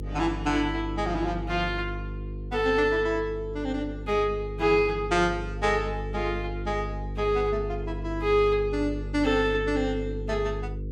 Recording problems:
hum; 50 Hz, harmonics up to 500 Hz, SNR 8 dB

